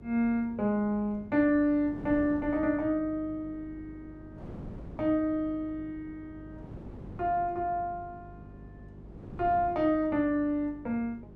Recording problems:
electrical hum; 50 Hz, harmonics up to 400 Hz, SNR 21 dB
wind on the microphone; below 350 Hz, SNR 19 dB

